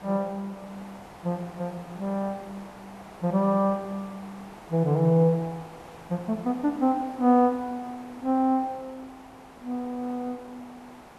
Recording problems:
background hiss; SNR 19 dB

